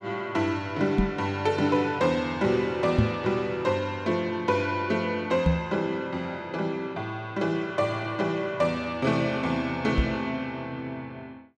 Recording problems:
microphone thump; 4 times, first at 1 s; peak +8 dB vs average level

